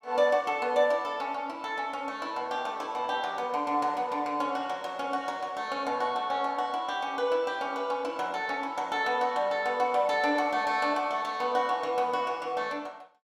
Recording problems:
none

